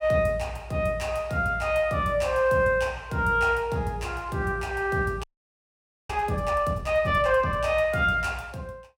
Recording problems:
frozen audio; at 5 s for 1 s

